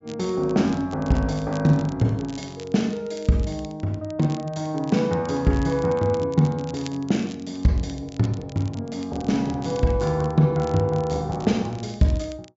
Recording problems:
treble cut off; nothing above 8 kHz
crackling; vinyl, SNR 23 dB

